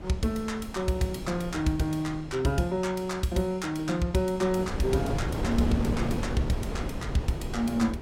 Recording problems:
wind on the microphone; below 380 Hz, SNR 5 dB

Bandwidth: 17 kHz